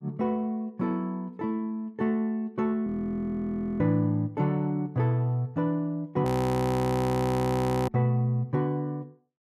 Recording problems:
audio freezing; at 3 s for 1 s and at 6.5 s for 1.5 s

